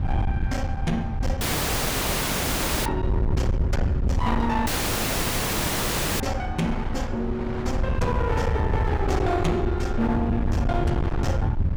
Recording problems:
distortion; hard clipping, uneven, signal-to-distortion ratio 6 dB
rumble; below 120 Hz, SNR 0 dB
wind on the microphone; below 740 Hz, SNR 11 dB
dropout; at 1.5 s for 1.5 s and at 4.5 s for 1.5 s

